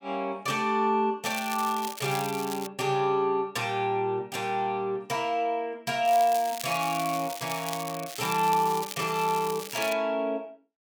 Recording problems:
crackling; from 1.5 to 2.5 s and from 6 to 10 s; loose cable, SNR 10 dB

